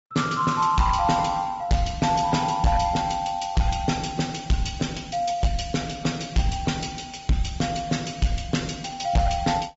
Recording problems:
low-pass filter; nothing above 7.6 kHz
lossy codec; Opus, log-spectral distance 5 dB
distorted audio; hard clipping, signal-to-distortion ratio 12 dB

